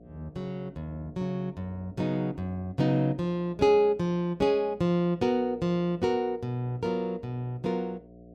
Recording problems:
hum; 60 Hz, harmonics up to 720 Hz, SNR 24 dB

